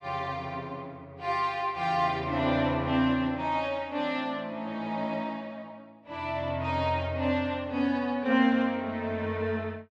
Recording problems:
none

